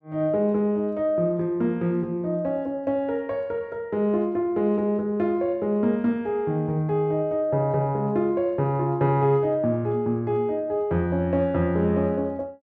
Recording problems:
none

